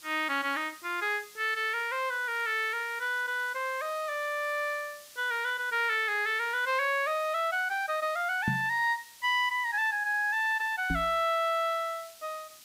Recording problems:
background hiss; slope +3 dB per octave, SNR 20 dB
knock on the microphone; at 8.5 s and at 11 s; peak +2 dB vs average level

